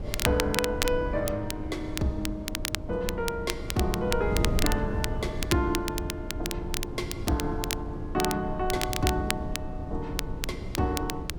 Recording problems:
wind on the microphone; below 160 Hz, SNR 5 dB
crackling; vinyl, SNR 4 dB

